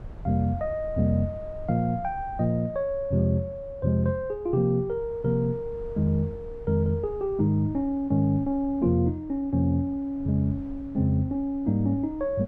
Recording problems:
wind on the microphone; below 110 Hz, SNR 19 dB

